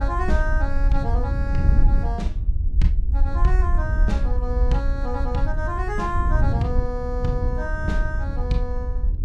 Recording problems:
low-frequency rumble; below 60 Hz, SNR -2 dB
wind noise; below 88 Hz, SNR -2 dB

